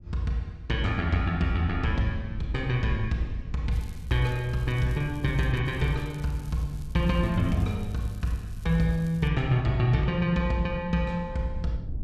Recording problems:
low-frequency rumble; below 88 Hz, SNR 14 dB
crackle; from 3.5 to 5.5 s and from 5.5 to 9.5 s; loose cable, SNR 27 dB

